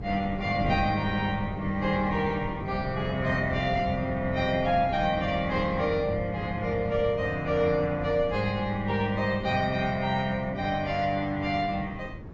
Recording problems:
codec artefacts; AAC, log-spectral distance 2 dB, nothing above 6.9 kHz
wind on the microphone; below 250 Hz, SNR 11 dB

